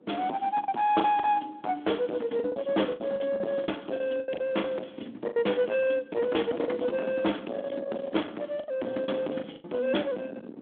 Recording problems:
phone line; 220 Hz to 3.5 kHz, Speex
distorted audio; soft clipping, signal-to-distortion ratio 7 dB
wind on the microphone; below 680 Hz, SNR 19 dB
lost packets; 10% of the sound replaced, filled with the last packet

